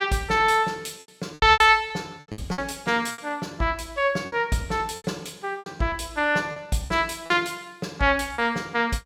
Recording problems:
lost packets; 9% of the sound replaced, filled with repeated pitch periods

